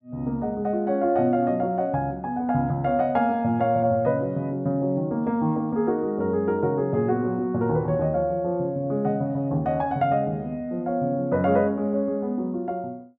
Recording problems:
none

